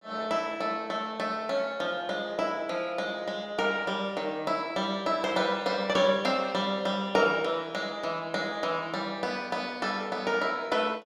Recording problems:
none

